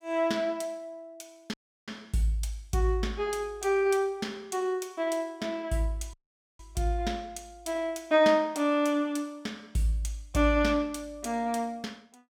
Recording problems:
audio cutting out; at 1.5 s and at 6 s

